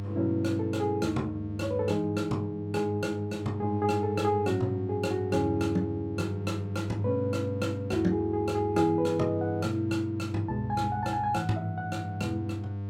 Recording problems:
hum; 50 Hz, harmonics up to 700 Hz, SNR 7 dB

